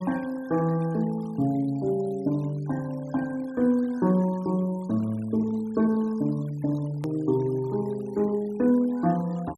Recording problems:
noise reduction artefacts; signal-to-artefact ratio 25 dB
edit click; at 7 s

